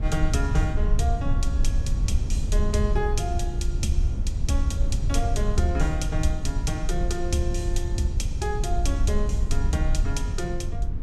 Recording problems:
low-frequency rumble; below 72 Hz, SNR -2 dB

